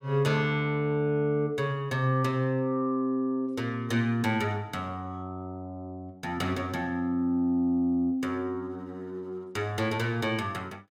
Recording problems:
none

